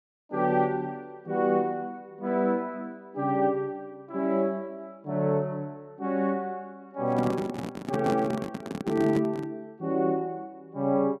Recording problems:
microphone handling noise; from 7 to 9.5 s; peak +1 dB vs average level

